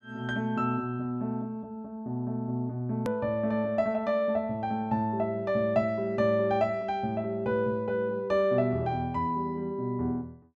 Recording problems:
hard cut with a click; at 3 s

